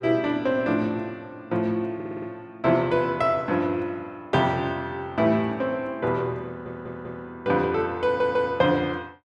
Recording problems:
stutter; at 2 s, at 6.5 s and at 8 s

